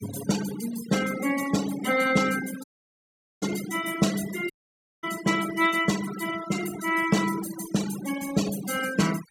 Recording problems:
denoising artefacts; signal-to-artefact ratio 11 dB
dropout; at 2.5 s for 1 s and at 4.5 s for 0.5 s

